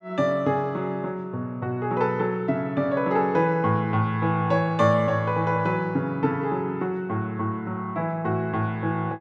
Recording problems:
none

